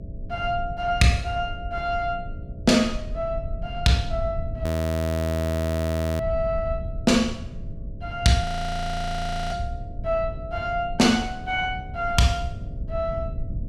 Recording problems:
electrical hum; 60 Hz, harmonics up to 660 Hz, SNR 21 dB
low-frequency rumble; below 160 Hz, SNR 8 dB
audio freezing; at 4.5 s for 1.5 s and at 8.5 s for 1 s

